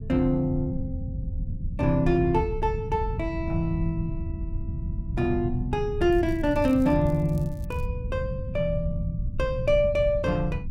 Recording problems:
rumble; below 120 Hz, SNR 6 dB
crackle; from 6 to 8 s; loose cable, SNR 28 dB

